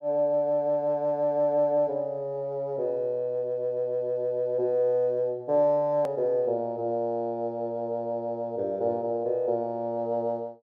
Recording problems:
click at an edit; at 6 s

